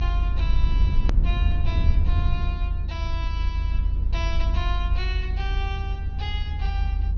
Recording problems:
treble cut off; nothing above 6.5 kHz
low-frequency rumble; below 76 Hz, SNR -10 dB
edit click; at 1 s

